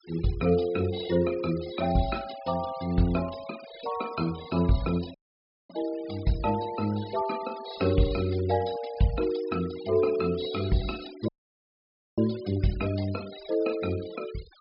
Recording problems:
treble missing; nothing above 5.5 kHz
denoising artefacts; signal-to-artefact ratio 17 dB
audio cutting out; at 5 s for 0.5 s and at 11 s for 1 s

